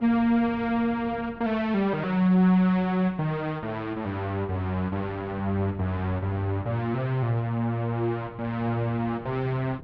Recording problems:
wind noise; below 300 Hz, SNR 21 dB

